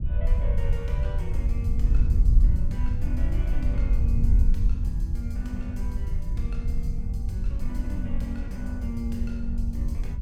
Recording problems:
wind on the microphone; below 64 Hz, SNR -10 dB

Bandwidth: 17 kHz